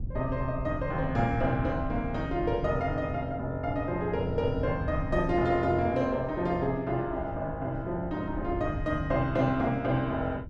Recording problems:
wind on the microphone; below 130 Hz, SNR 9 dB

